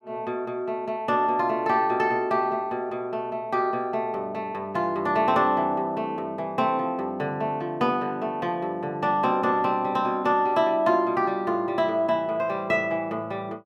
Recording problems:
none

